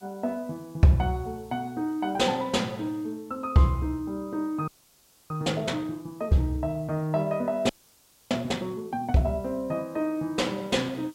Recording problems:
background hiss; SNR 29 dB
audio freezing; at 4.5 s for 0.5 s and at 7.5 s for 0.5 s

